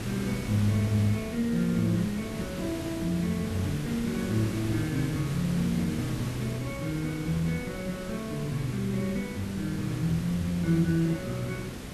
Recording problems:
hiss; SNR 7 dB

